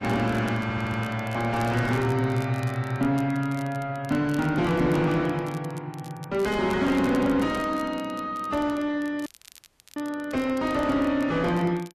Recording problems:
lossy compression; AAC, log-spectral distance 2 dB, nothing above 13.1 kHz
distorted audio; soft clipping, signal-to-distortion ratio 7 dB
crackling; vinyl, SNR 23 dB
stutter; at 0.5 s
dropout; at 9.5 s for 0.5 s

